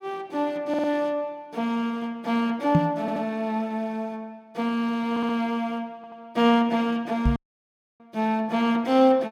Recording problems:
stutter; 4 times, first at 0.5 s
microphone thump; at 3 s and at 7.5 s; peak +8 dB vs average level
audio cutting out; at 7.5 s for 0.5 s

